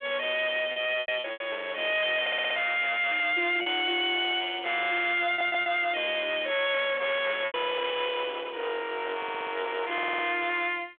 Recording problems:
phone line; 300 Hz to 3.7 kHz, G.726
distortion; hard clipping, signal-to-distortion ratio 7 dB
lost packets; 4% of the sound replaced, filled with repeated pitch periods
stutter; 4 times, first at 2 s

